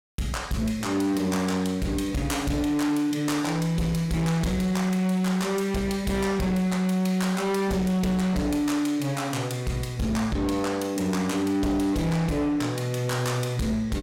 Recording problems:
distorted audio; hard clipping, signal-to-distortion ratio 10 dB

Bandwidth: 16.5 kHz